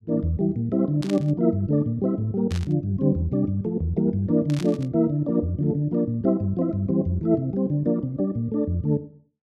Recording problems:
static burst; at 1 s, at 2.5 s and at 4.5 s; peak -9 dB vs average level

